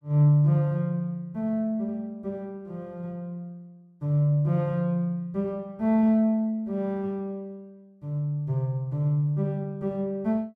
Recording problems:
none

